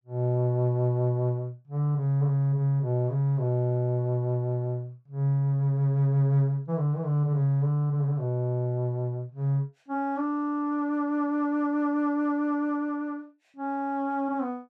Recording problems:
none

